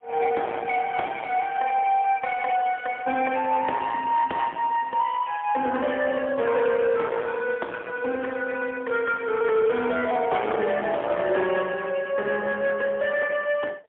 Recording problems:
telephone audio; 280 Hz to 3.7 kHz, AMR-NB, then MP3
distorted audio; hard clipping, signal-to-distortion ratio 11 dB

